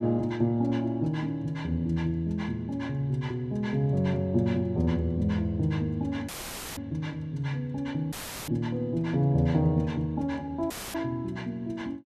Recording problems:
dropout; at 6.5 s, at 8 s and at 11 s; filled with static

